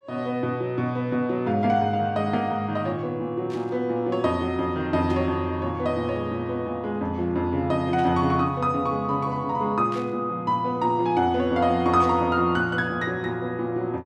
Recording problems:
static burst; 5 times, first at 3.5 s; peak -13 dB vs average level

